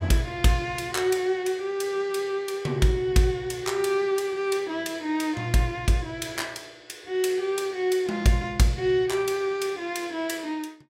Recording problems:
none

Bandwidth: 16 kHz